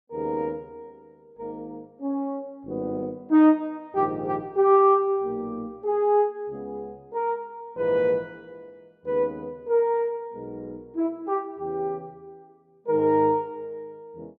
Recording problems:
none

